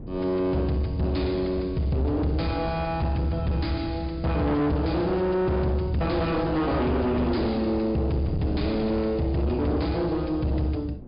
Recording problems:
treble cut off; nothing above 5.1 kHz
distortion; soft clipping, signal-to-distortion ratio 8 dB
wind on the microphone; below 270 Hz, SNR 13 dB

